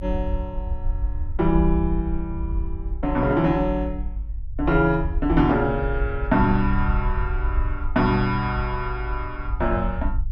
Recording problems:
low-frequency rumble; below 62 Hz, SNR 5 dB

